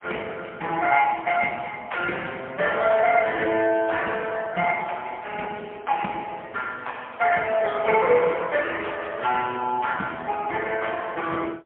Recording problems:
telephone audio; 240 Hz to 3.2 kHz, AMR-NB, then MP3

